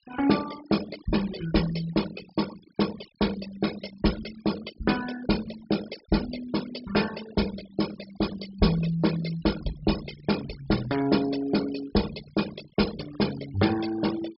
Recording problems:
treble missing; nothing above 5.3 kHz
denoising artefacts; signal-to-artefact ratio 12 dB

